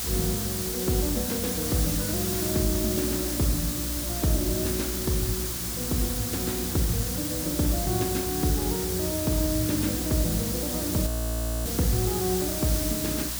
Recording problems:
electrical hum; 60 Hz, harmonics up to 300 Hz, SNR 11 dB
background hiss; slope 0 dB per octave, SNR 1 dB
frozen audio; at 11 s for 0.5 s

